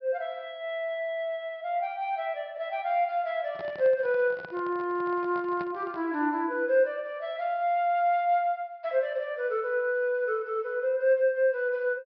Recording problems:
low-pass filter; nothing above 5.5 kHz
microphone handling noise; from 3.5 to 6 s; peak -10 dB vs average level

